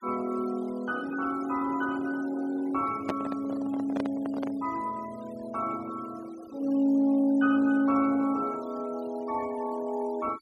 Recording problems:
noise reduction artefacts; signal-to-artefact ratio 21 dB
handling noise; from 3 to 4.5 s; peak +1 dB vs average level

